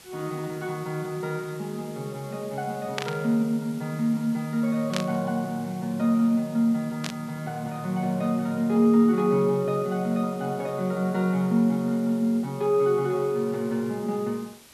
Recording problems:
background hiss; slope -1 dB per octave, SNR 23 dB
static burst; at 3 s, at 5 s and at 7 s; peak +1 dB vs average level

